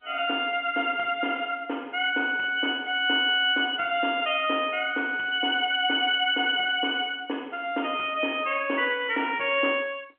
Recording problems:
phone line; 260 Hz to 3.2 kHz, G.711

